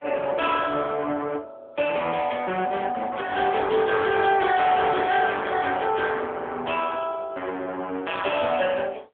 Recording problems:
phone line; 300 Hz to 3.3 kHz, AMR-NB
distortion; soft clipping, signal-to-distortion ratio 9 dB

